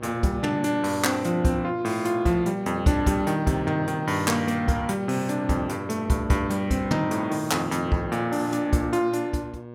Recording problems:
electrical hum; 60 Hz, harmonics up to 1.2 kHz, SNR 15 dB

